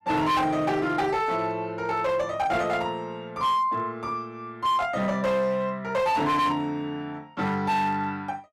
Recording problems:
distortion; hard clipping, signal-to-distortion ratio 11 dB

